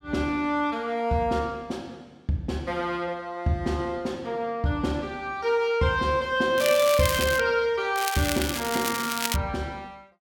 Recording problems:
crackle; at 6.5 s and from 8 to 9.5 s; loose cable, SNR 4 dB

